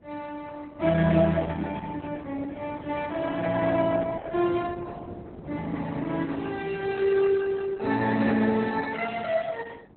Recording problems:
codec artefacts; Opus, log-spectral distance 4 dB, nothing above 4 kHz
wind on the microphone; below 430 Hz, SNR 18 dB

